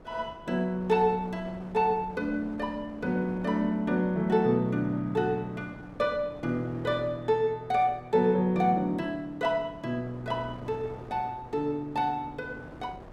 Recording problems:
wind on the microphone; below 690 Hz, SNR 19 dB

